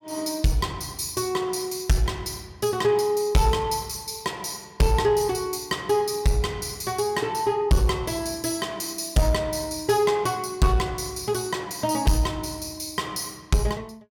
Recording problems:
distorted audio; soft clipping, signal-to-distortion ratio 10 dB

